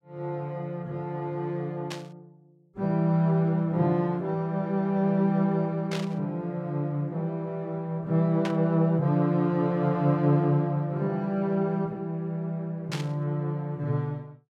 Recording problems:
burst of static; 4 times, first at 2 s; peak -4 dB vs average level

